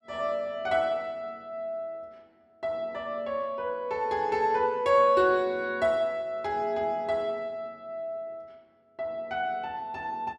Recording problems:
none

